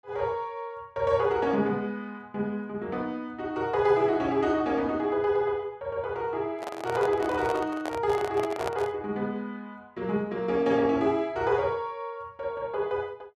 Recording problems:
microphone handling noise; from 6.5 to 9 s; peak 0 dB vs average level

